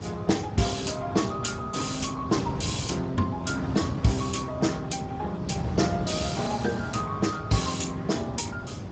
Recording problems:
lossy compression; Speex, log-spectral distance 6 dB, nothing above 7.6 kHz
wind on the microphone; below 350 Hz, SNR 7 dB

